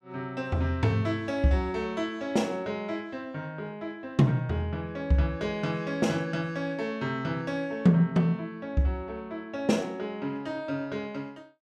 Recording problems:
none

